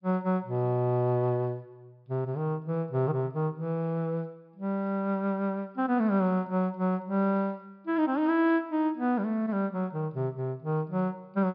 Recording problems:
low-pass filter; nothing above 5.5 kHz

